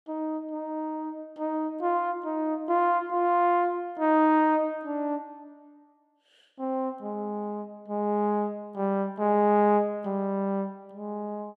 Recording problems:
none

